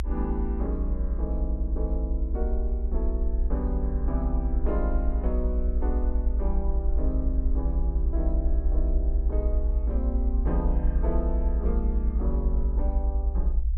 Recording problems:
rumble; below 60 Hz, SNR -7 dB

